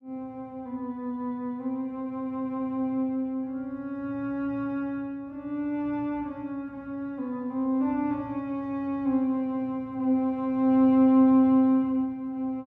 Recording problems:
none

